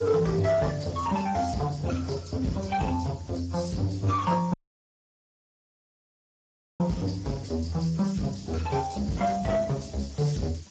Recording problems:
codec artefacts; AAC, then Speex, log-spectral distance 8 dB, nothing above 7.6 kHz
distorted audio; soft clipping, signal-to-distortion ratio 11 dB
background hiss; slope +3 dB per octave, SNR 24 dB
audio cutting out; at 4.5 s for 2.5 s

